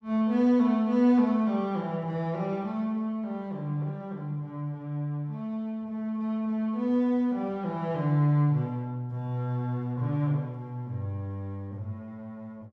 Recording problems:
none

